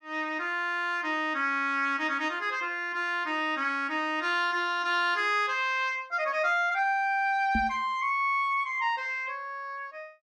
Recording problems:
microphone bump; at 7.5 s; peak 0 dB vs average level

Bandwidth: 13 kHz